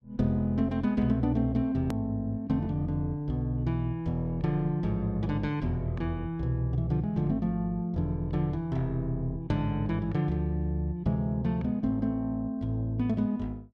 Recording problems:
click at an edit; at 2 s

